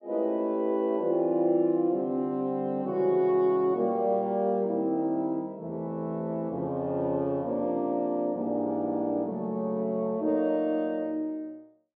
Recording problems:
none

